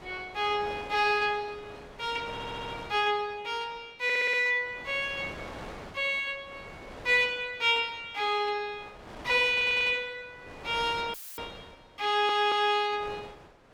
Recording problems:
wind noise; below 1.5 kHz, SNR 18 dB
stutter; 4 times, first at 2.5 s
dropout; at 11 s; filled with static

